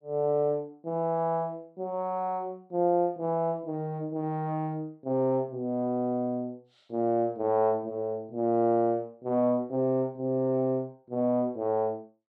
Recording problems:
none

